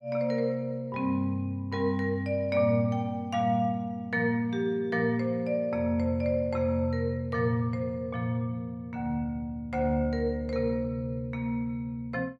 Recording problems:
none

